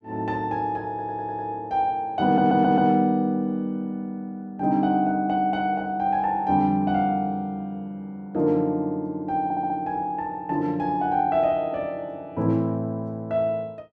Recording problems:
stutter; at 1 s, at 2.5 s and at 9.5 s

